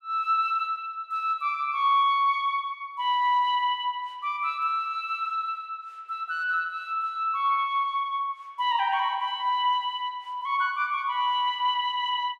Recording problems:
none

